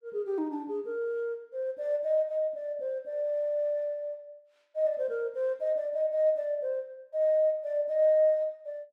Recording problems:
none

